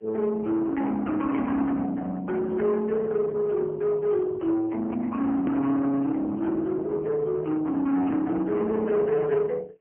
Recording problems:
phone line; 300 Hz to 2.2 kHz, AMR-NB
distorted audio; soft clipping, signal-to-distortion ratio 10 dB
hard cut with a click; at 5.5 s

